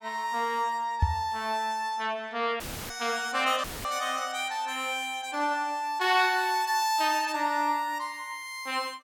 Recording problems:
microphone bump; at 1 s; peak +7 dB vs average level
audio cutting out; at 2.5 s and at 3.5 s; filled with static

